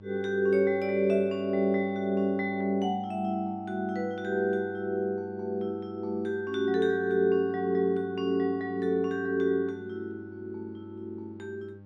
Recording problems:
electrical hum; 50 Hz, harmonics up to 800 Hz, SNR 21 dB

